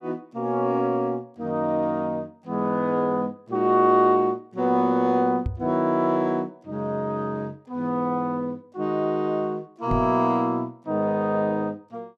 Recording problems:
microphone bump; at 5.5 s and at 10 s; peak 0 dB vs average level

